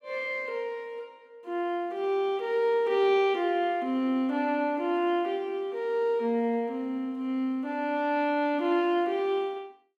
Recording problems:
none

